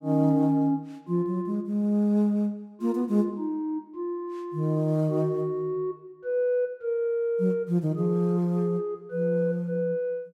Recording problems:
none

